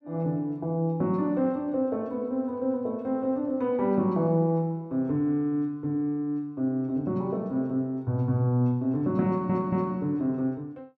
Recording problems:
stutter; at 9.5 s

